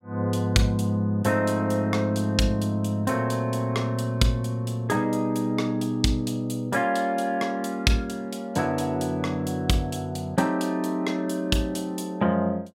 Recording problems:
none

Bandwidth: 16.5 kHz